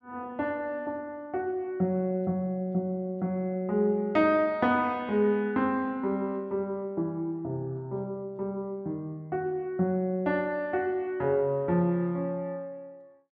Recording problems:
none

